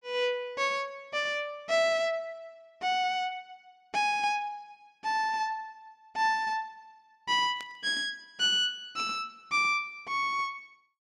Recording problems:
burst of static; at 7.5 s; peak -12 dB vs average level

